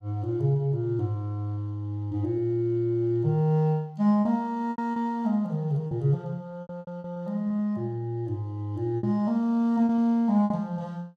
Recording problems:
packet loss; 6% of the sound replaced, filled with repeated pitch periods

